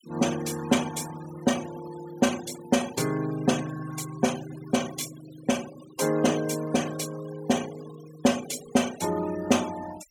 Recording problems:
denoising artefacts; signal-to-artefact ratio 15 dB

